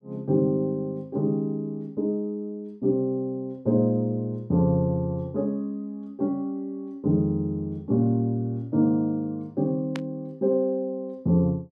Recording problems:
burst of static; at 10 s; peak -6 dB vs average level

